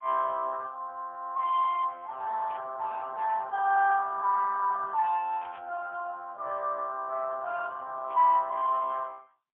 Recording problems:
phone line; 320 Hz to 3.1 kHz, AMR-NB, then MP3
burst of static; at 2.5 s, at 5.5 s and at 8 s; peak -14 dB vs average level

